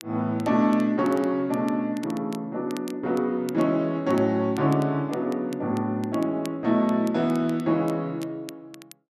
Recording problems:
crackle; vinyl, SNR 24 dB

